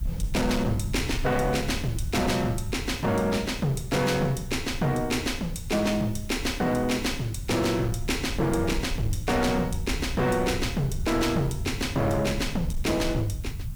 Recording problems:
distortion; hard clipping, signal-to-distortion ratio 10 dB
hiss; slope -1 dB per octave, SNR 24 dB
low-frequency rumble; below 100 Hz, SNR 9 dB

